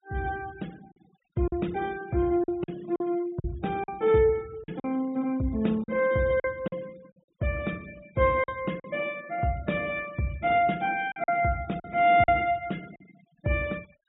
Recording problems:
treble missing; nothing above 4 kHz
noise reduction artefacts; signal-to-artefact ratio 24 dB
lost packets; 6% of the sound replaced, filled with silence

